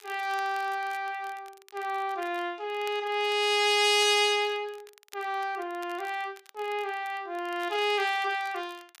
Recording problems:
crackling; vinyl, SNR 25 dB

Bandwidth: 15 kHz